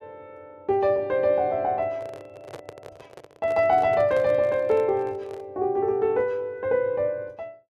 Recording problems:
microphone handling noise; from 2 to 5.5 s; peak -10 dB vs average level

